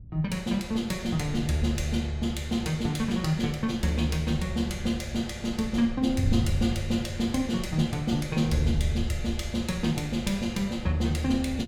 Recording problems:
wind noise; below 100 Hz, SNR 11 dB

